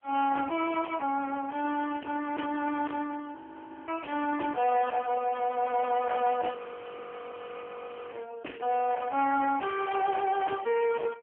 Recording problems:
telephone audio; 260 Hz to 2.7 kHz, AMR-NB
distorted audio; soft clipping, signal-to-distortion ratio 10 dB
frozen audio; at 3.5 s for 0.5 s and at 6.5 s for 1.5 s

